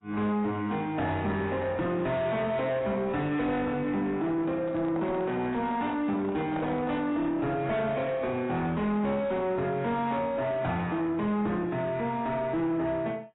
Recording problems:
lossy compression; AAC, log-spectral distance 2 dB, nothing above 3.8 kHz
distorted audio; soft clipping, signal-to-distortion ratio 10 dB
handling noise; from 4.5 to 7 s; peak -4 dB vs average level

